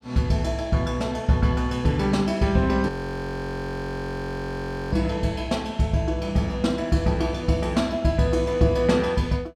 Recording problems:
audio freezing; at 3 s for 2 s

